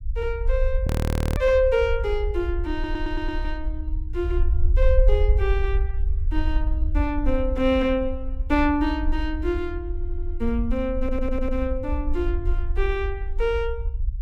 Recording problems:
low-frequency rumble; below 62 Hz, SNR 1 dB
audio freezing; at 1 s for 0.5 s
audio stuttering; at 2.5 s, at 10 s and at 11 s

